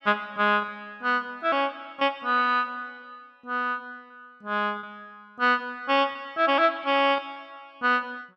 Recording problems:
packet loss; 3% of the sound replaced, filled with repeated pitch periods

